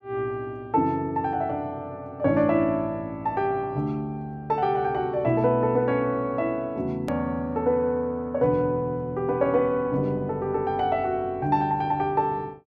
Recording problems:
edit click; at 7 s

